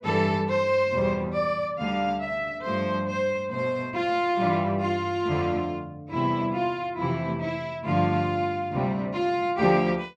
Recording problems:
none

